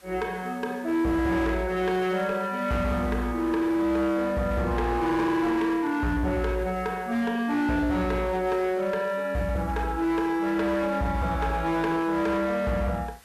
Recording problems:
distortion; hard clipping, signal-to-distortion ratio 11 dB
hiss; SNR 27 dB

